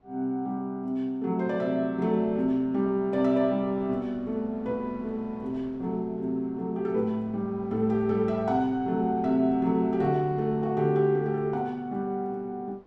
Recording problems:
wind on the microphone; below 700 Hz, SNR 25 dB

